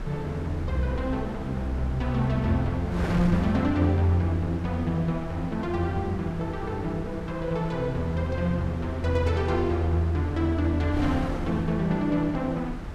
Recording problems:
wind noise; below 340 Hz, SNR 10 dB

